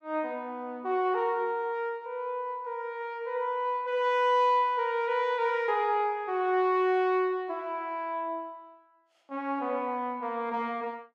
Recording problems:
none

